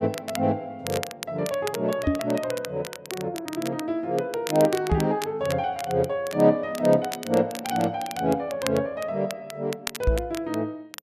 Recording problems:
crackle; vinyl, SNR 12 dB
microphone bump; at 2 s, at 5 s and at 10 s; peak +6 dB vs average level

